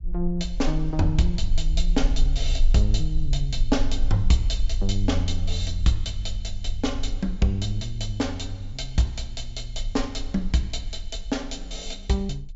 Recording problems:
low-pass filter; nothing above 8 kHz
rumble; below 40 Hz, strongest tone 18 Hz, SNR 3 dB

